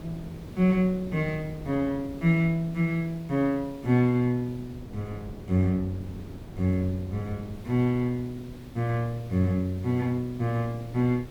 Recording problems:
hiss; slope -3 dB per octave, SNR 25 dB
wind noise; below 290 Hz, SNR 17 dB

